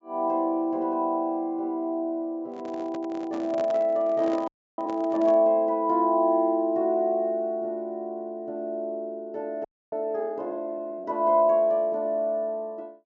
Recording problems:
treble cut off; nothing above 7.5 kHz
microphone handling noise; from 2.5 to 5.5 s; peak -7 dB vs average level
frozen audio; at 4.5 s and at 9.5 s

